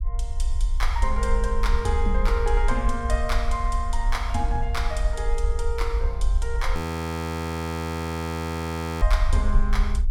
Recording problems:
low-frequency rumble; below 58 Hz, SNR -3 dB
audio freezing; at 7 s for 2.5 s

